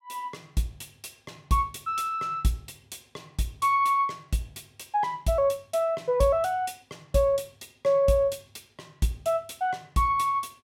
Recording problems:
none

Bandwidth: 16.5 kHz